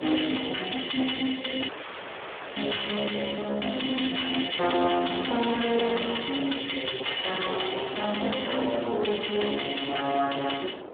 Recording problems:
phone line; 280 Hz to 3.5 kHz, Speex
distortion; hard clipping, uneven, signal-to-distortion ratio 9 dB
wind on the microphone; below 730 Hz, SNR 14 dB
audio cutting out; at 1.5 s for 1 s

